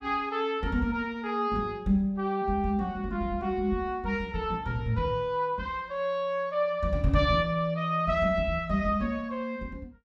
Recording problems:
none

